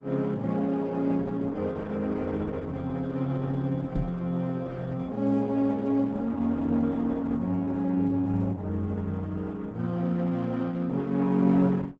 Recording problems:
codec artefacts; Opus, log-spectral distance 3 dB, nothing above 7.6 kHz
microphone thump; at 4 s; peak +3 dB vs average level

